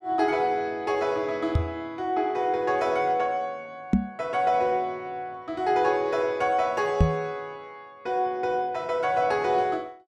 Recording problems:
knock on the microphone; at 1.5 s, at 4 s and at 7 s; peak +9 dB vs average level

